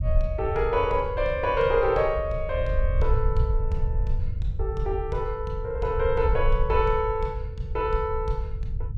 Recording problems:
low-frequency rumble; below 72 Hz, SNR 4 dB

